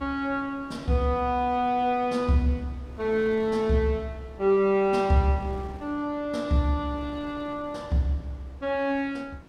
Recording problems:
wind noise; below 610 Hz, SNR 21 dB

